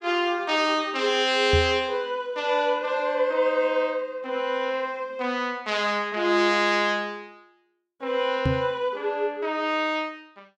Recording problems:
microphone bump; at 1.5 s and at 8.5 s; peak +3 dB vs average level

